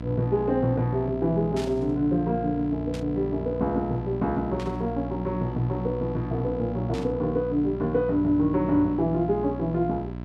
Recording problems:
hum; 60 Hz, harmonics up to 1.4 kHz, SNR 9 dB
burst of static; 4 times, first at 1.5 s; peak -9 dB vs average level

